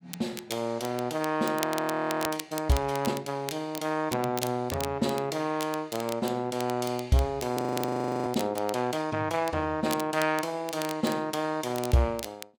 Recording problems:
crackling; vinyl, SNR 12 dB
frozen audio; at 1.5 s for 0.5 s and at 7.5 s for 0.5 s

